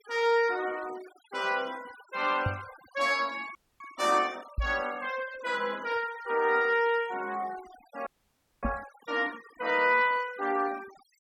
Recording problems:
noise reduction artefacts; signal-to-artefact ratio 20 dB
microphone bump; at 2.5 s, at 4.5 s and at 8.5 s; peak +2 dB vs average level
frozen audio; at 3.5 s and at 8 s for 0.5 s

